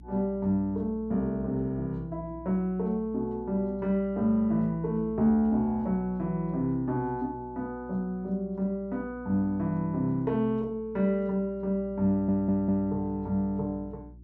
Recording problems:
electrical hum; 60 Hz, harmonics up to 360 Hz, SNR 19 dB
stutter; at 12 s

